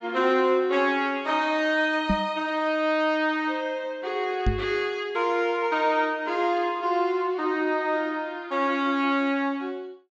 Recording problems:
treble missing; nothing above 8 kHz
knock on the microphone; at 2 s and at 4.5 s; peak +4 dB vs average level

